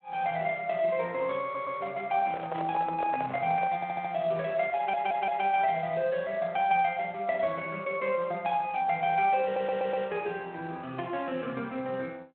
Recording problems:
telephone audio; 220 Hz to 3.3 kHz, Speex
audio stuttering; 4 times, first at 1.5 s
handling noise; from 2 to 3.5 s; peak -3 dB vs average level

